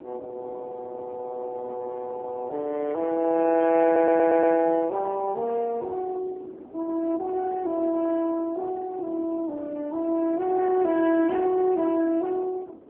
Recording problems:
telephone audio; 260 Hz to 2.2 kHz, AMR-NB
wind noise; below 480 Hz, SNR 20 dB
audio stuttering; at 4 s

